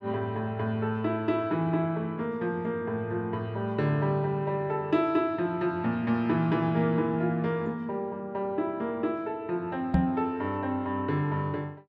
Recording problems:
microphone bump; at 10 s; peak +9 dB vs average level

